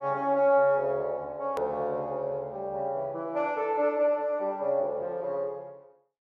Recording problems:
click at an edit; at 1.5 s

